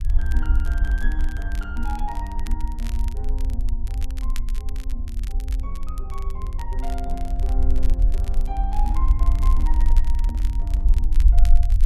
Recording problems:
rumble; below 52 Hz, SNR -12 dB
crackle; vinyl, SNR 10 dB
handling noise; from 7 to 11 s; peak -4 dB vs average level

